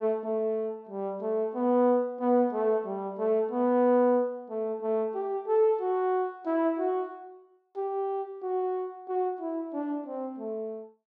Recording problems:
none

